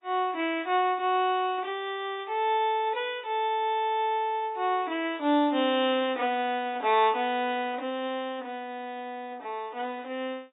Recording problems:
lossy compression; AAC, log-spectral distance 2 dB, nothing above 3.2 kHz

